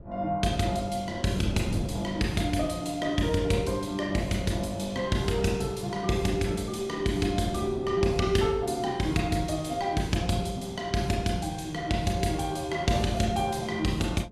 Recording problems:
wind noise; below 240 Hz, SNR 16 dB

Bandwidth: 14 kHz